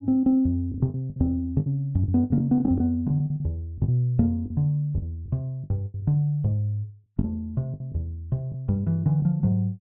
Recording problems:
treble missing; nothing above 4 kHz
packet loss; 11% of the sound replaced, filled with the last packet

